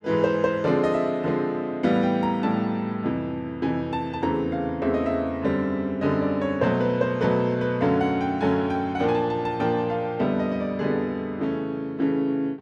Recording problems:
none

